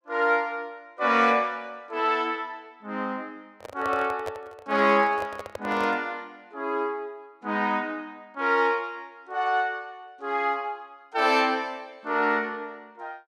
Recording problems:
microphone handling noise; from 3.5 to 6 s; peak -5 dB vs average level

